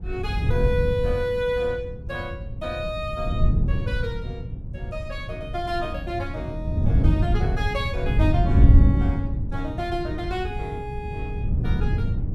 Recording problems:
wind noise; below 110 Hz, SNR -4 dB

